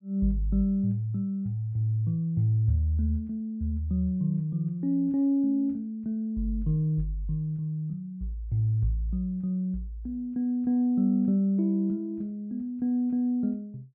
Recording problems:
none

